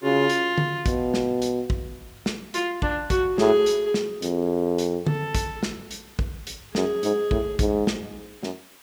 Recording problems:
background hiss; SNR 25 dB

